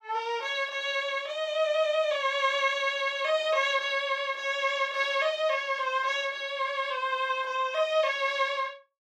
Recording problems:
none

